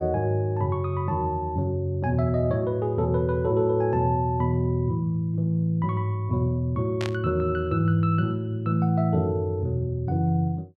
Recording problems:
burst of static; at 7 s; peak -6 dB vs average level

